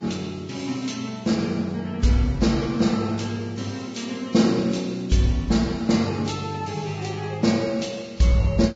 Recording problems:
lossy compression; Vorbis, log-spectral distance 4 dB, nothing above 7.3 kHz

